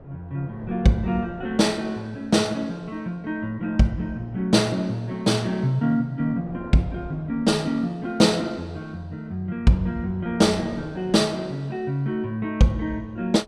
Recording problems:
wind noise; below 550 Hz, SNR 21 dB

